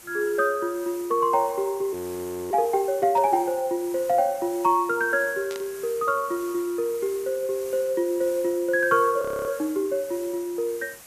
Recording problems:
hiss; slope -2 dB per octave, SNR 18 dB
audio freezing; at 2 s for 0.5 s and at 9 s
static burst; at 3 s and at 5.5 s; peak -11 dB vs average level

